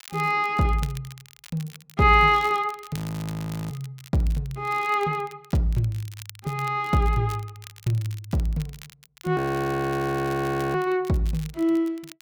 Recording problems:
crackle; vinyl, SNR 21 dB
audio freezing; at 3 s for 0.5 s and at 9.5 s for 1.5 s

